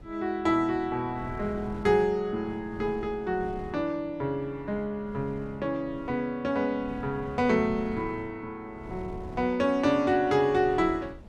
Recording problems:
wind on the microphone; below 250 Hz, SNR 17 dB

